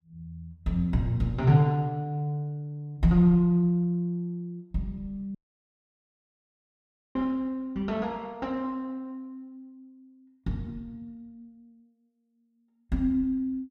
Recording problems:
dropout; at 5.5 s for 2 s

